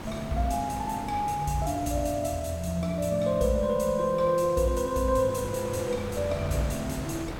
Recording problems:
hum; 60 Hz, harmonics up to 600 Hz, SNR 27 dB
hiss; slope -2 dB per octave, SNR 28 dB
wind noise; below 1 kHz, SNR 13 dB

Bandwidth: 17 kHz